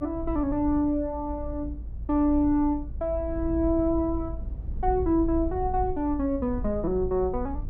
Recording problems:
low-frequency rumble; below 68 Hz, SNR 9 dB

